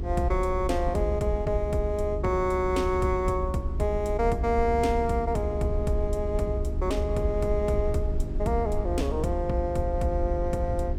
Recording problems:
hum; 50 Hz, harmonics up to 400 Hz, SNR 11 dB
low-frequency rumble; below 70 Hz, SNR 5 dB

